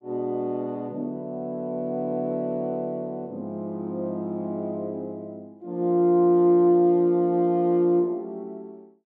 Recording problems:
none

